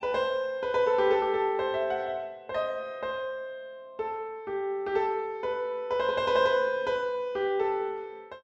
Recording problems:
none

